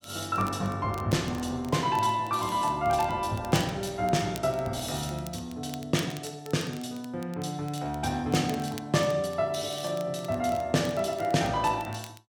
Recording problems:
crackling; vinyl, SNR 19 dB

